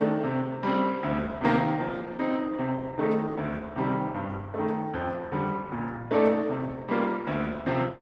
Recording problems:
lossy compression; Opus, log-spectral distance 3 dB

